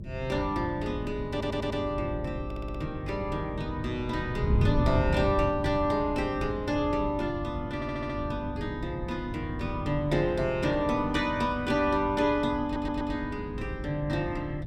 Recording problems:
electrical hum; 50 Hz, harmonics up to 350 Hz, SNR 14 dB
wind on the microphone; below 160 Hz, SNR 6 dB
audio stuttering; 4 times, first at 1.5 s

